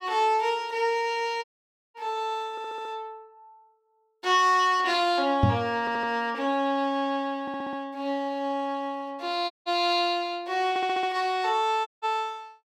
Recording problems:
audio cutting out; at 1.5 s for 0.5 s, at 9.5 s and at 12 s
audio stuttering; 4 times, first at 2.5 s
microphone thump; at 5.5 s; peak +8 dB vs average level

